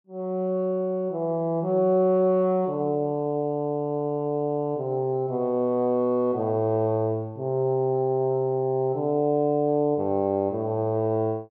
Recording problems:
none

